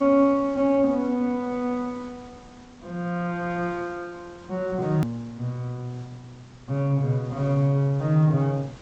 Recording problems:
lossy compression; G.722, log-spectral distance 2 dB, nothing above 20.1 kHz
background hiss; slope -4 dB per octave, SNR 24 dB
click at an edit; at 5 s

